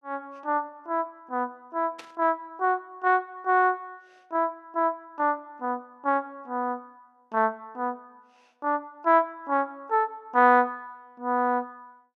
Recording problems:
static burst; at 2 s; peak -11 dB vs average level

